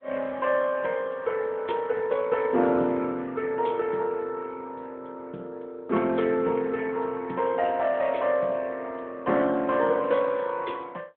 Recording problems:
phone line; 170 Hz to 3.5 kHz, AMR-NB

